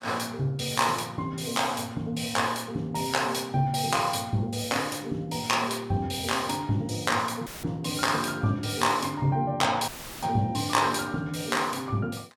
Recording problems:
audio cutting out; at 7.5 s and at 10 s; filled with static

